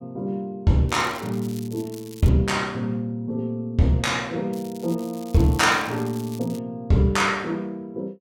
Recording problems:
crackling; from 1 to 2.5 s and from 4.5 to 6.5 s; loose cable, SNR 21 dB

